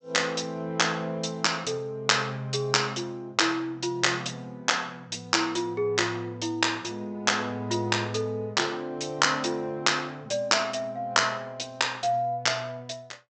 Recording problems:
treble cut off; nothing above 8 kHz

